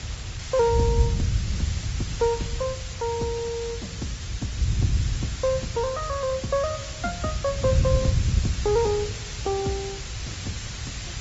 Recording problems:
treble cut off; nothing above 7.6 kHz
lossy compression; Opus, log-spectral distance 6 dB
hiss; slope +1 dB per octave, SNR 8 dB
wind noise; below 120 Hz, SNR 1 dB

